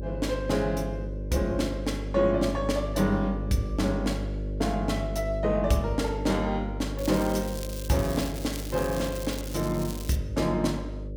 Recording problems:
hum; 50 Hz, harmonics up to 600 Hz, SNR 6 dB
crackling; from 7 to 10 s; loose cable, SNR 12 dB

